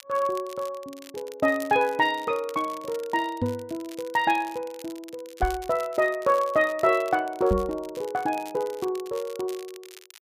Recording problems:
crackling; vinyl, SNR 21 dB
knock on the microphone; at 3.5 s, at 5.5 s and at 7.5 s; peak +3 dB vs average level

